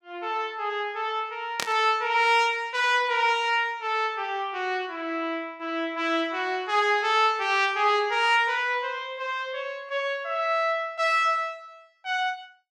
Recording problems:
burst of static; at 1.5 s; peak +1 dB vs average level

